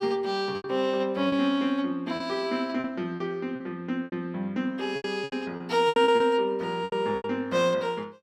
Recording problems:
packet loss; 11% of the sound replaced, filled with repeated pitch periods

